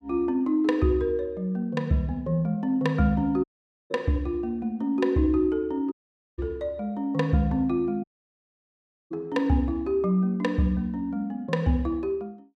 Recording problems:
dropout; at 3.5 s, at 6 s and at 8 s for 1 s

